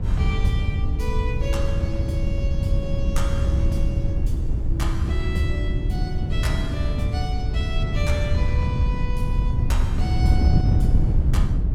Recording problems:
wind noise; below 110 Hz, SNR -7 dB

